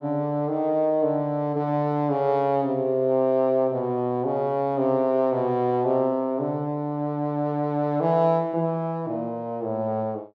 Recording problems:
none

